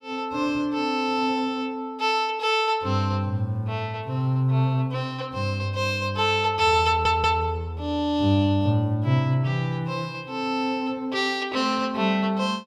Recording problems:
stutter; at 7 s

